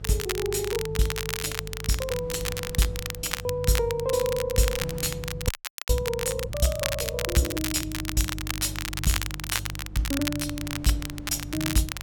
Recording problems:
electrical hum; 50 Hz, harmonics up to 400 Hz, SNR 11 dB
wind noise; below 200 Hz, SNR 20 dB
crackle; vinyl, SNR 4 dB
audio freezing; at 5.5 s

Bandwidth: 17.5 kHz